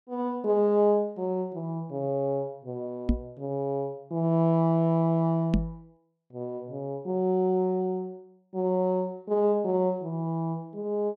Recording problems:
microphone bump; at 3 s and at 5.5 s; peak +7 dB vs average level

